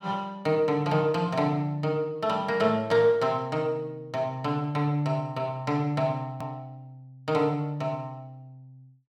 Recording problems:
edit click; at 6.5 s

